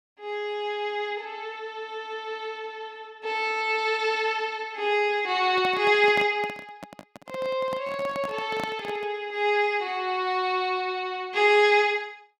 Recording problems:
microphone handling noise; from 5.5 to 9 s; peak -5 dB vs average level

